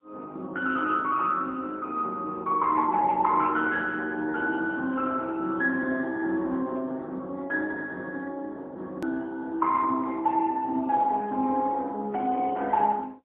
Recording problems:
phone line; 220 Hz to 2.1 kHz, AMR-NB, then MP3
click at an edit; at 9 s

